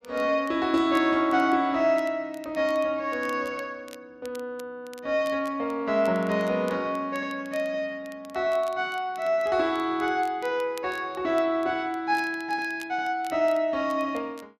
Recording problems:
crackling; vinyl, SNR 25 dB

